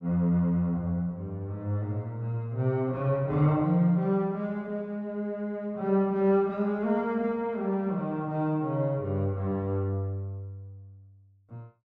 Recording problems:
none

